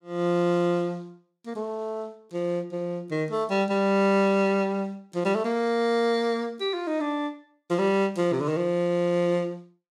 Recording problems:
none

